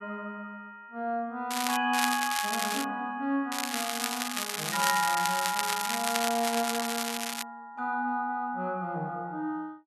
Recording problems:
crackling; at 1.5 s, at 2 s and from 3.5 to 7.5 s; loose cable, SNR 1 dB

